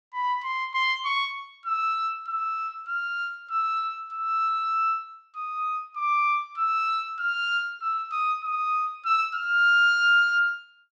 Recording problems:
none

